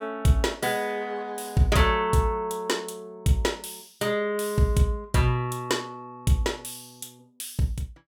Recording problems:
none

